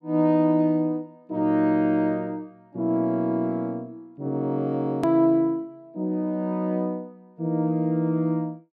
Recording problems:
hard cut with a click; at 5 s

